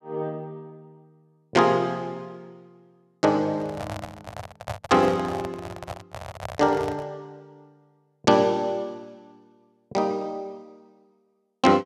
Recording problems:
microphone handling noise; from 3.5 to 7 s; peak -3 dB vs average level

